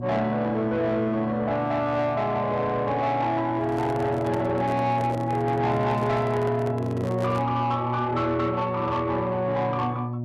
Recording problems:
distorted audio; soft clipping, signal-to-distortion ratio 12 dB
electrical hum; 60 Hz, harmonics up to 720 Hz, SNR 7 dB
handling noise; from 3.5 to 7.5 s; peak -4 dB vs average level

